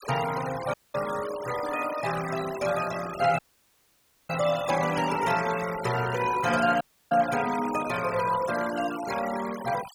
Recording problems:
denoising artefacts; signal-to-artefact ratio 11 dB
audio cutting out; at 0.5 s, at 3.5 s for 1 s and at 7 s

